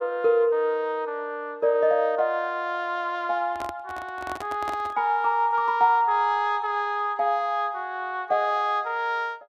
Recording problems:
handling noise; from 3.5 to 5 s; peak -6 dB vs average level

